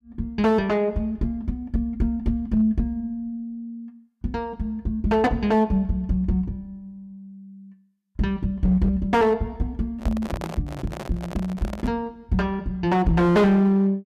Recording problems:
distortion; hard clipping, signal-to-distortion ratio 10 dB
handling noise; from 10 to 12 s; peak -5 dB vs average level

